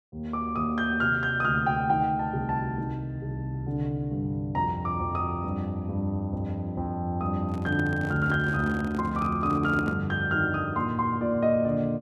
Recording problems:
handling noise; from 7.5 to 10 s; peak -4 dB vs average level

